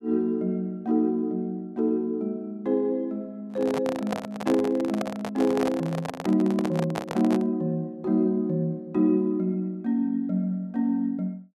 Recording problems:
handling noise; from 3.5 to 7.5 s; peak -1 dB vs average level

